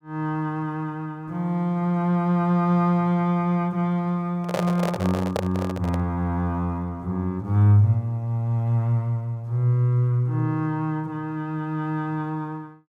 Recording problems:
microphone handling noise; from 4.5 to 6 s; peak +1 dB vs average level

